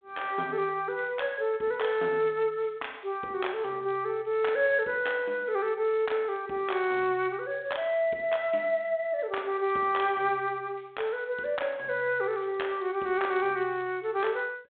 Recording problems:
telephone audio; 220 Hz to 3.6 kHz, G.726

